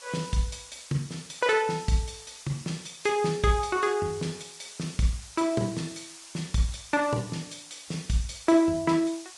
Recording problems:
codec artefacts; Vorbis, log-spectral distance 10 dB, nothing above 10.4 kHz
hiss; slope +3 dB per octave, SNR 16 dB

